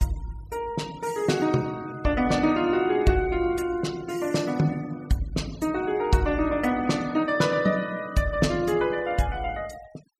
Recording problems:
denoising artefacts; signal-to-artefact ratio 21 dB

